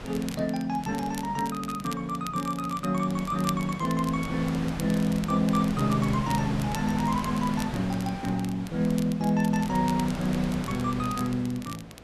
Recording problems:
hum; 60 Hz, harmonics up to 720 Hz, SNR 27 dB
wind on the microphone; below 1.4 kHz, SNR 11 dB
crackle; vinyl, SNR 17 dB

